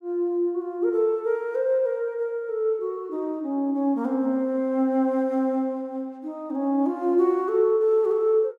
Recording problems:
none

